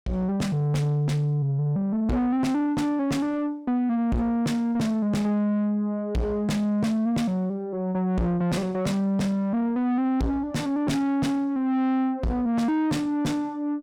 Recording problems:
distorted audio; soft clipping, signal-to-distortion ratio 6 dB

